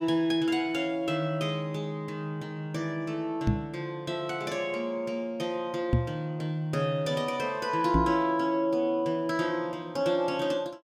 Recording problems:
microphone bump; at 3.5 s, at 6 s and at 8 s; peak +8 dB vs average level

